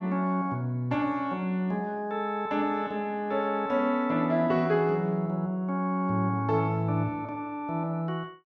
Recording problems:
none

